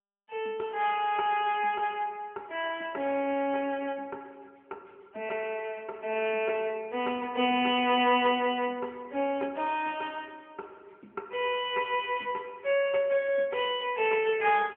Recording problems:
telephone audio; 190 Hz to 3.2 kHz, AMR-NB

